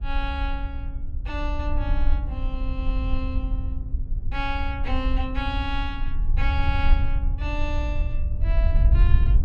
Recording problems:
wind on the microphone; below 62 Hz, SNR -6 dB

